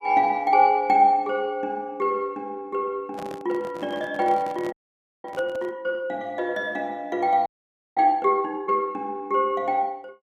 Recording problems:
microphone handling noise; from 3 to 5.5 s; peak -9 dB vs average level
frozen audio; at 4.5 s for 0.5 s and at 7.5 s for 0.5 s

